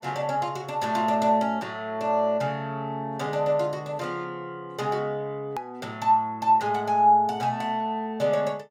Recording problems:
hard cut with a click; at 5.5 s

